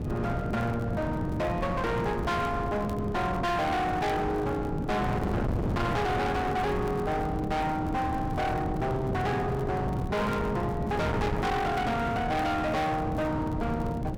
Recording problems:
distorted audio; hard clipping, signal-to-distortion ratio 6 dB
wind noise; below 410 Hz, SNR 4 dB
crackle; vinyl, SNR 29 dB

